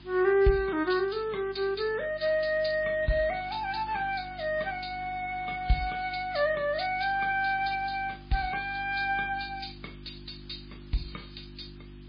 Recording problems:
codec artefacts; MP3, log-spectral distance 12 dB, nothing above 4.8 kHz
hum; 50 Hz, harmonics up to 350 Hz, SNR 20 dB
background hiss; SNR 27 dB

